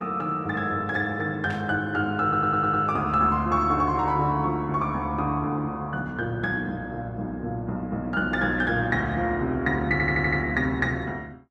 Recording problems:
lossy compression; Opus, log-spectral distance 2 dB
static burst; at 1.5 s; peak -13 dB vs average level
audio stuttering; at 2 s and at 10 s

